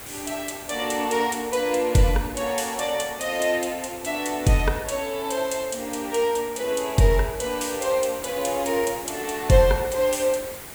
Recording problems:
background hiss; slope -4 dB per octave, SNR 14 dB

